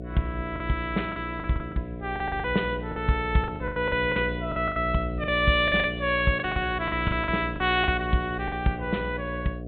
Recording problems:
low-pass filter; nothing above 4 kHz
electrical hum; 60 Hz, harmonics up to 720 Hz, SNR 8 dB
packet loss; 12% of the sound replaced, filled with the last packet

